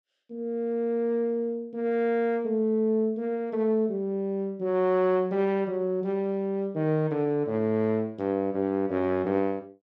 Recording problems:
none

